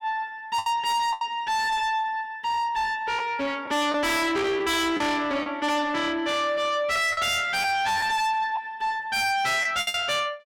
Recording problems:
distortion; soft clipping, signal-to-distortion ratio 6 dB
packet loss; 5% of the sound replaced, filled with the last packet

